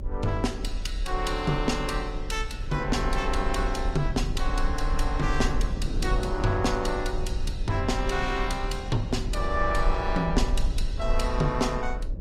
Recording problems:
codec artefacts; Opus, log-spectral distance 2 dB, nothing above 18.3 kHz
electrical hum; 60 Hz, harmonics up to 600 Hz, SNR 21 dB
low-frequency rumble; below 48 Hz, SNR 4 dB
wind noise; below 320 Hz, SNR 15 dB

